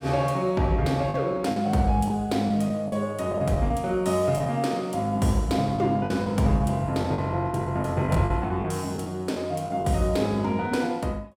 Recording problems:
packet loss; 6% of the sound replaced, filled with the last packet

